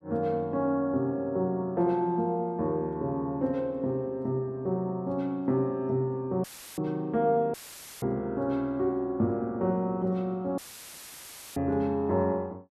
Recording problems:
audio cutting out; at 6.5 s, at 7.5 s and at 11 s for 1 s; filled with static

